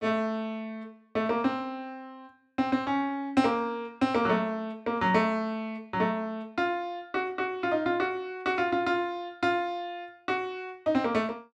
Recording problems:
none

